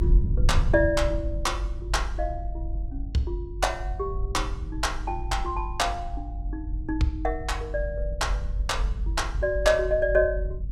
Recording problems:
rumble; below 66 Hz, SNR 3 dB

